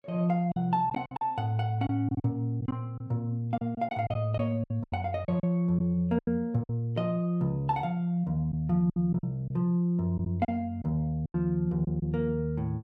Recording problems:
lost packets; 9% of the sound replaced, filled with silence

